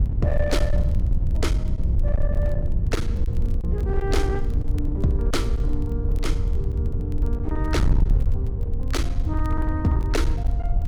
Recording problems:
distortion; hard clipping, uneven, signal-to-distortion ratio 11 dB
wind noise; below 80 Hz, SNR -4 dB
crackle; vinyl, SNR 28 dB

